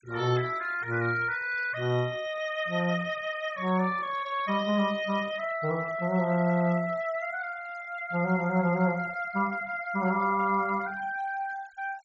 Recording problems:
low-pass filter; nothing above 8 kHz
denoising artefacts; signal-to-artefact ratio 20 dB

